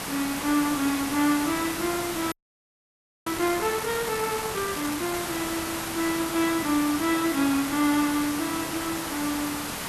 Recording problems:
hiss; slope -3 dB per octave, SNR 4 dB
audio freezing; at 2.5 s for 1 s

